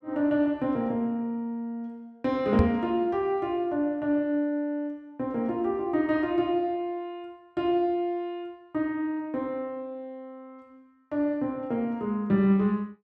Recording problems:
microphone bump; at 2.5 s; peak +7 dB vs average level

